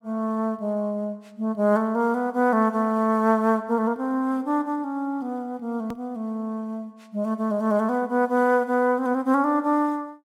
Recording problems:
edit click; at 6 s

